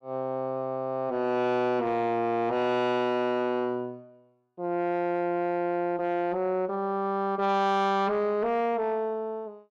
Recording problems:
distortion; soft clipping, signal-to-distortion ratio 10 dB

